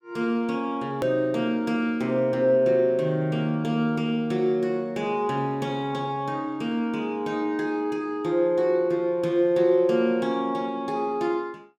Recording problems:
edit click; at 1 s

